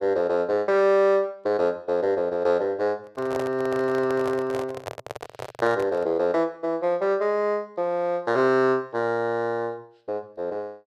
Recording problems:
microphone handling noise; from 3 to 6 s; peak -4 dB vs average level

